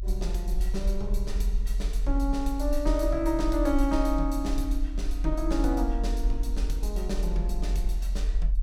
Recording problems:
rumble; below 44 Hz, strongest tone 42 Hz, SNR -1 dB

